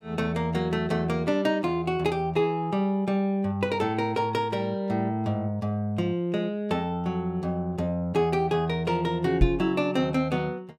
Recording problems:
knock on the microphone; at 9.5 s; peak +8 dB vs average level

